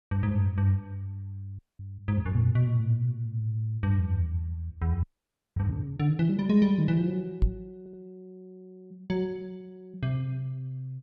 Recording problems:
frozen audio; at 1.5 s and at 5 s for 0.5 s
knock on the microphone; at 7.5 s; peak +6 dB vs average level
audio stuttering; at 8 s

